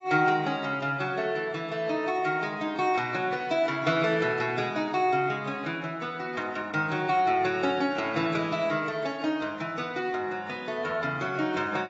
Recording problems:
lossy codec; AAC, log-spectral distance 3 dB, nothing above 7.6 kHz

